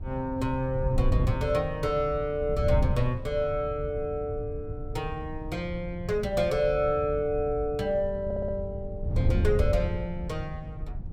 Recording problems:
wind on the microphone; below 110 Hz, SNR 4 dB
stutter; at 8 s

